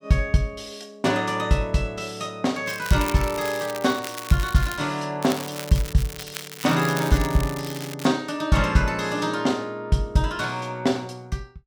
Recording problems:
crackle; from 2.5 to 5 s and from 5 to 8 s; loose cable, SNR 12 dB

